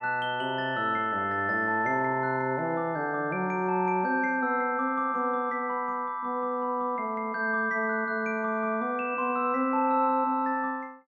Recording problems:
none

